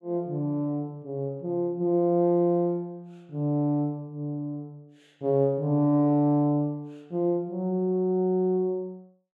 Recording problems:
none

